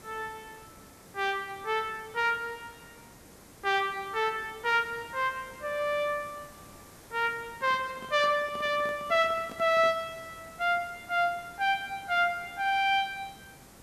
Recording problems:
background hiss; SNR 22 dB
microphone handling noise; from 7.5 to 10 s; peak -11 dB vs average level

